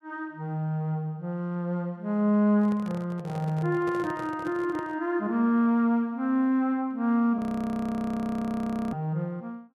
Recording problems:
handling noise; from 2.5 to 5 s; peak -9 dB vs average level
audio freezing; at 7.5 s for 1.5 s

